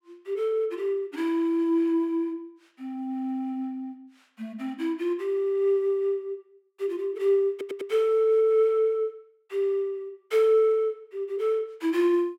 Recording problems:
audio stuttering; at 7.5 s

